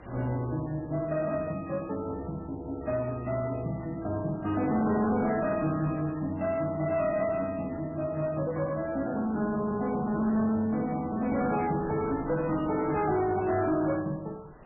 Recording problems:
lossy codec; MP3, log-spectral distance 3 dB, nothing above 2.5 kHz
distorted audio; soft clipping, signal-to-distortion ratio 11 dB
wind on the microphone; below 930 Hz, SNR 21 dB

